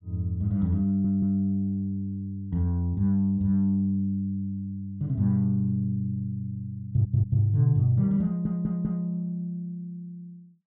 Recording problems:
stutter; at 1 s, at 7 s and at 8.5 s

